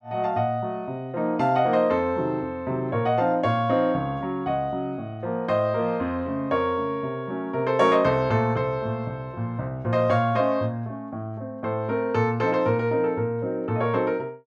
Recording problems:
none

